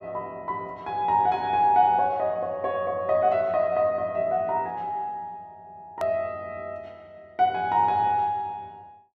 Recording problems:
click at an edit; at 6 s

